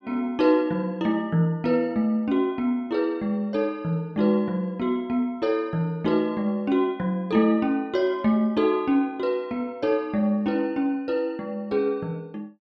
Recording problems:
none

